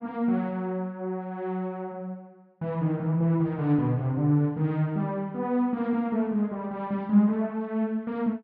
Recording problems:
low-pass filter; nothing above 5.4 kHz

